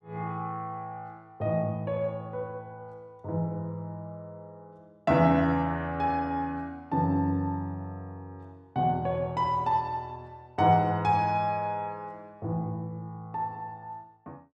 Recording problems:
none

